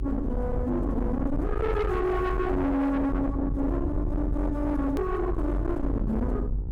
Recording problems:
distortion; soft clipping, signal-to-distortion ratio 7 dB
hum; 60 Hz, harmonics up to 1.4 kHz, SNR 20 dB
low-frequency rumble; below 260 Hz, strongest tone 46 Hz, SNR 3 dB
click at an edit; at 5 s

